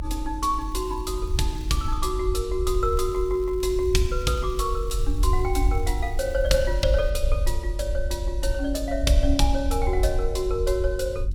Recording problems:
hum; 50 Hz, harmonics up to 350 Hz, SNR 22 dB
low-frequency rumble; below 58 Hz, SNR 2 dB
crackling; from 0.5 to 2 s and from 2.5 to 7 s; loose cable, SNR 26 dB

